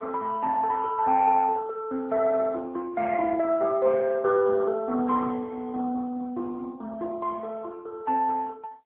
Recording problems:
telephone audio; 240 Hz to 2.1 kHz, AMR-NB

